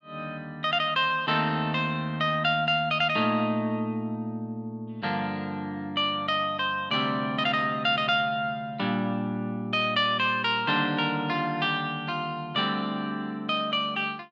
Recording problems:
none

